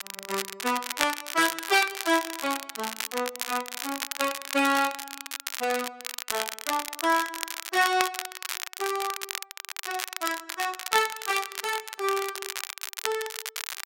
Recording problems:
crackle; vinyl, SNR 5 dB

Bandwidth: 16 kHz